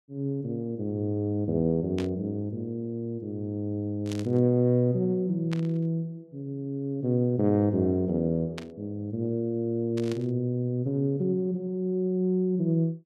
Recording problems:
burst of static; 5 times, first at 2 s; peak -7 dB vs average level

